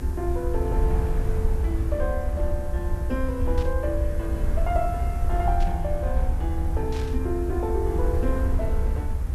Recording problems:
hiss; SNR 22 dB
low-frequency rumble; below 76 Hz, SNR -3 dB
static burst; at 3.5 s, at 5.5 s and at 7 s; peak -6 dB vs average level

